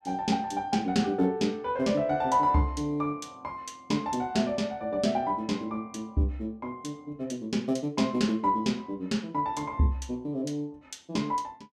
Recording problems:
none

